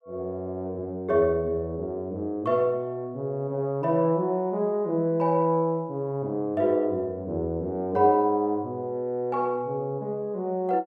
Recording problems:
none

